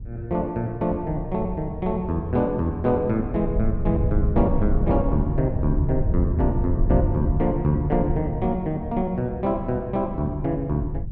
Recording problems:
wind on the microphone; below 100 Hz, SNR 4 dB

